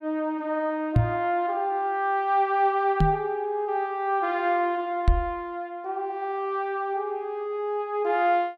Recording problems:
microphone thump; at 1 s, at 3 s and at 5 s; peak +9 dB vs average level

